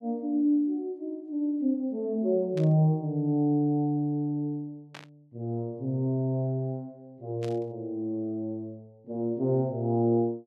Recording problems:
burst of static; at 2.5 s, at 5 s and at 7.5 s; peak -11 dB vs average level

